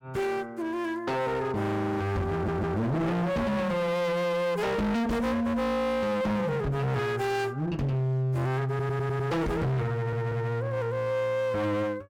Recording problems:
distorted audio; hard clipping, signal-to-distortion ratio 6 dB
stutter; at 2.5 s, at 8.5 s and at 10 s

